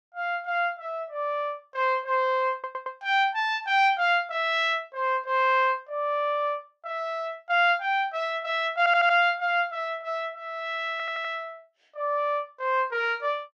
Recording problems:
stutter; at 2.5 s, at 9 s and at 11 s

